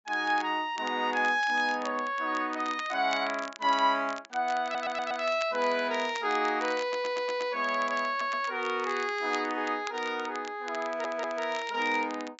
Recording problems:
treble cut off; nothing above 8 kHz
crackle; vinyl, SNR 17 dB
audio stuttering; 4 times, first at 4.5 s

